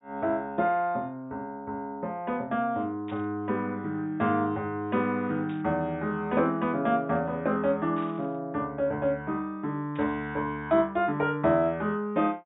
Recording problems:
low-pass filter; nothing above 4 kHz
burst of static; 4 times, first at 3 s; peak -15 dB vs average level

